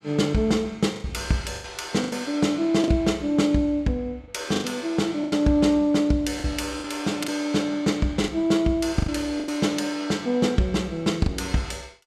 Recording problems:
lost packets; 7% of the sound replaced, filled with the last packet

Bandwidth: 15 kHz